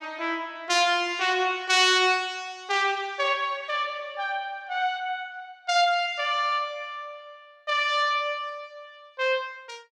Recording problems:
none

